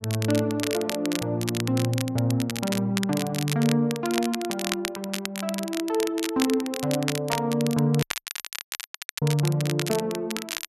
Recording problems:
crackling; vinyl, SNR 7 dB
audio cutting out; at 8 s for 1 s

